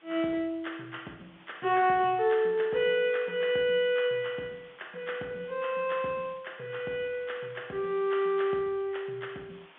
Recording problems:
telephone audio; 190 Hz to 3.5 kHz, G.711
hiss; SNR 27 dB

